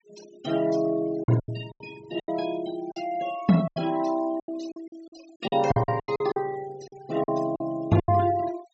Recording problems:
treble cut off; nothing above 7.8 kHz
denoising artefacts; signal-to-artefact ratio 19 dB
lost packets; 13% of the sound replaced, filled with silence

